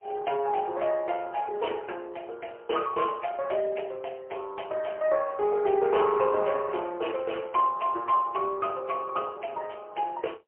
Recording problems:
telephone audio; 340 Hz to 3.1 kHz, AMR-NB, then MP3

